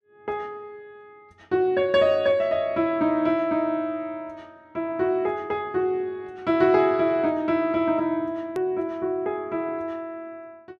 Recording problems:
hard cut with a click; at 8.5 s

